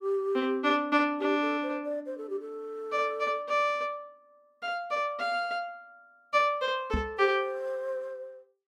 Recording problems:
microphone bump; at 7 s; peak +2 dB vs average level

